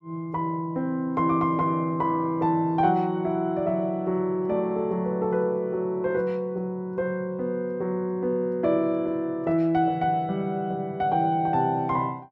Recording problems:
none

